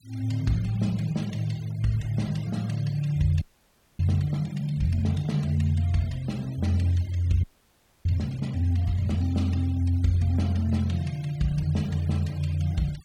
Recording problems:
denoising artefacts; signal-to-artefact ratio 23 dB
audio freezing; at 3.5 s for 0.5 s and at 7.5 s for 0.5 s

